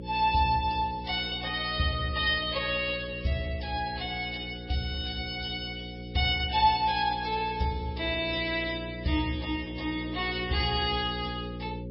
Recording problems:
codec artefacts; MP3, log-spectral distance 5 dB, nothing above 4.5 kHz
electrical hum; 60 Hz, harmonics up to 540 Hz, SNR 11 dB

